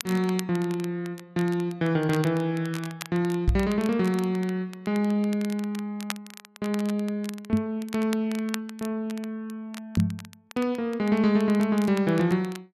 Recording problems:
crackling; vinyl, SNR 17 dB
knock on the microphone; at 3.5 s, at 7.5 s and at 10 s; peak +8 dB vs average level

